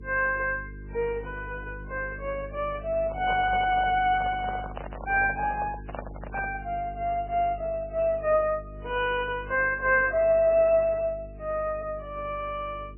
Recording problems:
lossy codec; AAC, then MP3, log-spectral distance 2 dB, nothing above 2.4 kHz
electrical hum; 50 Hz, harmonics up to 450 Hz, SNR 16 dB
handling noise; from 3 to 6.5 s; peak -4 dB vs average level

